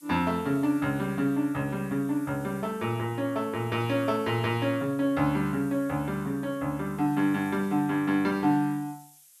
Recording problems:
background hiss; slope +5 dB per octave, SNR 25 dB

